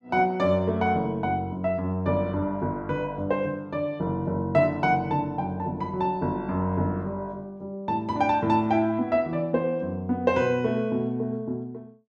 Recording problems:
none

